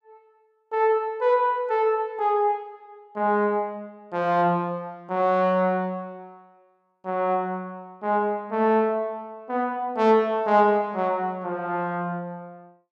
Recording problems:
none

